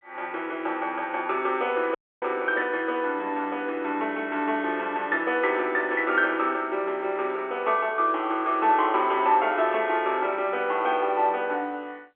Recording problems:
phone line; 260 Hz to 3.4 kHz, G.711
dropout; at 2 s

